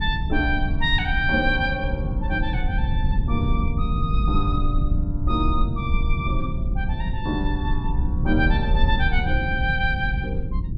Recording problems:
rumble; below 96 Hz, SNR -1 dB

